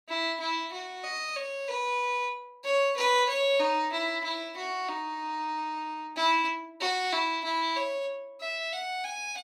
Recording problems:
none

